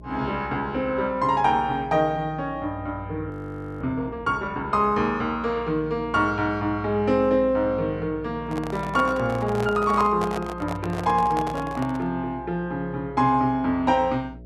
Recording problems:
hum; 60 Hz, harmonics up to 660 Hz, SNR 19 dB
audio freezing; at 3.5 s for 0.5 s
microphone handling noise; from 8.5 to 12 s; peak -3 dB vs average level

